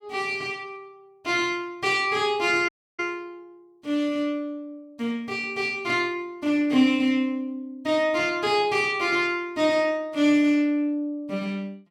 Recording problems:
audio cutting out; at 2.5 s

